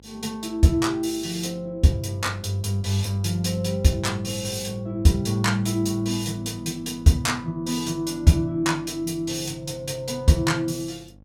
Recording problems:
hum; 50 Hz, harmonics up to 850 Hz, SNR 24 dB

